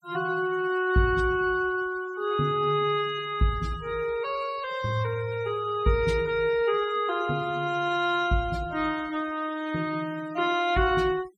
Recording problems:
denoising artefacts; signal-to-artefact ratio 20 dB

